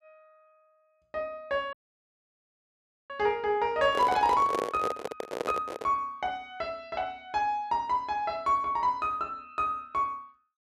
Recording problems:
dropout; at 1.5 s for 1.5 s
handling noise; from 4 to 6 s; peak +2 dB vs average level

